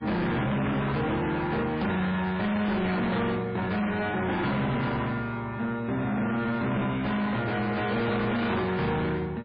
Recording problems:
lossy compression; MP3, log-spectral distance 3 dB, nothing above 4.2 kHz
distorted audio; soft clipping, signal-to-distortion ratio 7 dB

